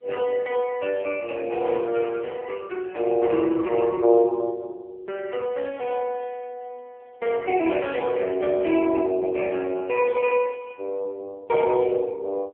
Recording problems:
telephone audio; 300 Hz to 3.2 kHz, AMR-NB

